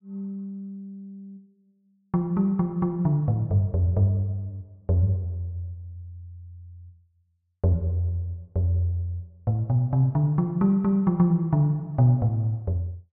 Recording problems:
none

